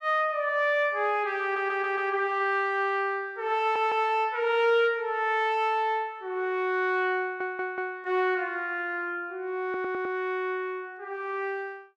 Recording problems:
stutter; 4 times, first at 1.5 s

